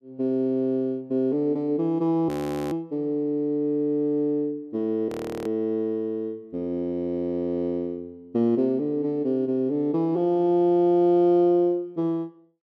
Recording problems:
audio freezing; at 2.5 s and at 5 s

